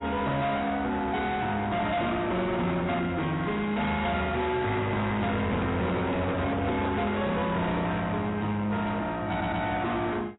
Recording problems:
lossy codec; AAC, log-spectral distance 3 dB, nothing above 3.8 kHz
distorted audio; soft clipping, signal-to-distortion ratio 8 dB
microphone handling noise; from 5.5 to 8 s; peak +3 dB vs average level
audio stuttering; at 9.5 s

